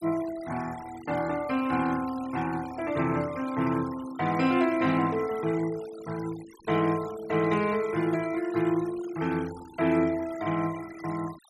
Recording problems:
denoising artefacts; signal-to-artefact ratio 17 dB

